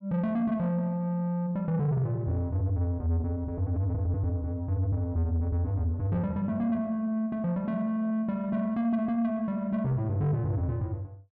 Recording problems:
distortion; soft clipping, signal-to-distortion ratio 12 dB

